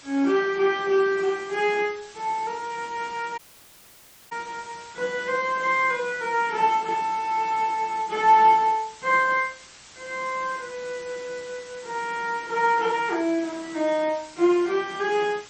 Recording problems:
codec artefacts; MP3, then MP3, log-spectral distance 8 dB
background hiss; slope 0 dB per octave, SNR 21 dB
dropout; at 3.5 s for 1 s

